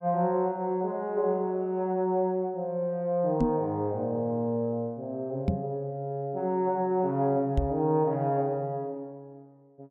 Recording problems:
microphone thump; at 3.5 s, at 5.5 s and at 7.5 s; peak +6 dB vs average level

